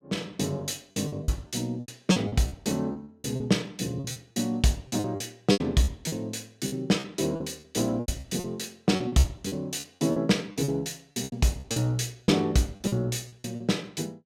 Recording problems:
packet loss; 15% of the sound replaced, filled with repeated pitch periods

